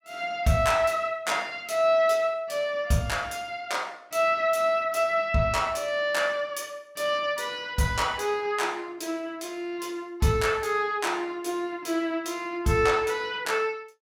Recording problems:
none

